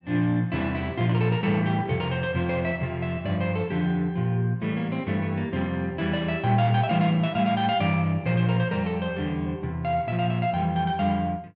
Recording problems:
none

